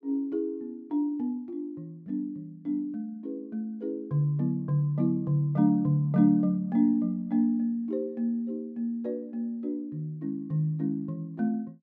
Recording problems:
none

